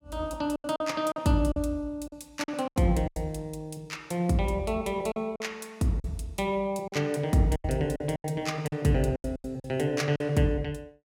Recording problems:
packet loss; 10% of the sound replaced, filled with silence

